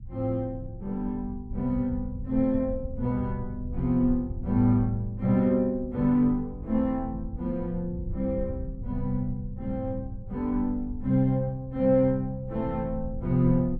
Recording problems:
rumble; below 92 Hz, SNR 11 dB

